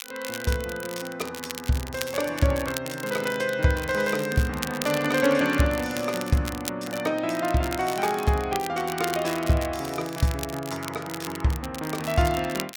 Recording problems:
crackle; vinyl, SNR 11 dB

